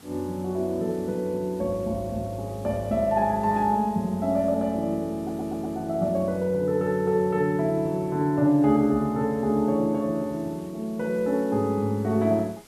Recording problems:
background hiss; slope -3 dB per octave, SNR 26 dB
audio stuttering; at 5 s

